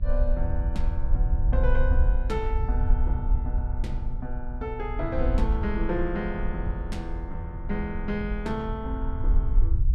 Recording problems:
hum; 60 Hz, harmonics up to 840 Hz, SNR 21 dB
rumble; below 60 Hz, SNR -3 dB

